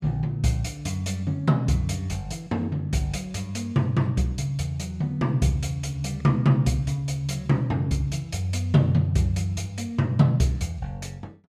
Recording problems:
none

